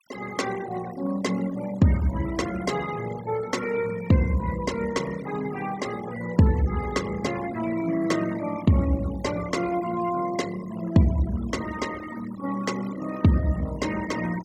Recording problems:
denoising artefacts; signal-to-artefact ratio 15 dB

